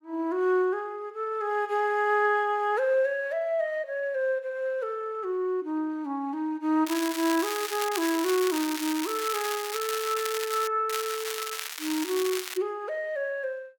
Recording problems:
crackle; from 7 to 8 s, from 8 to 11 s and from 11 to 13 s; loose cable, SNR 6 dB

